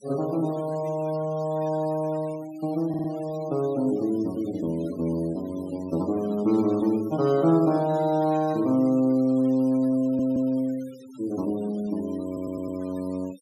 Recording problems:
denoising artefacts; signal-to-artefact ratio 22 dB
audio stuttering; at 3 s, at 10 s and at 12 s

